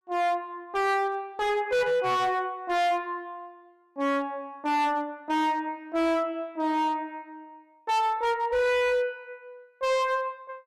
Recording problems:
distorted audio; hard clipping, signal-to-distortion ratio 7 dB

